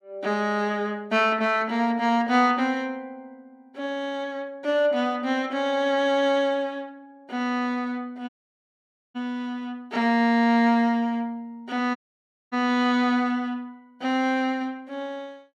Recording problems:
dropout; at 8.5 s for 1 s and at 12 s for 0.5 s

